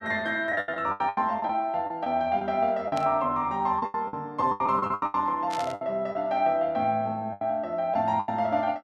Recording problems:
packet loss; 13% of the sound replaced, filled with the last packet
burst of static; at 1 s, at 3 s and at 5.5 s; peak -7 dB vs average level

